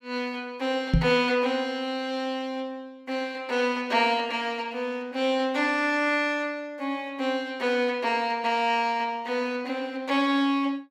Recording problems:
microphone thump; at 1 s; peak +8 dB vs average level

